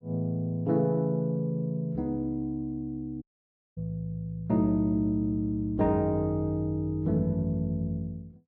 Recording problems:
dropout; at 3 s for 0.5 s

